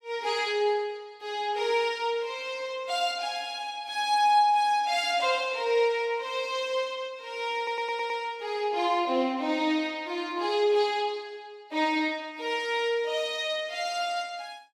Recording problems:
audio stuttering; at 7.5 s

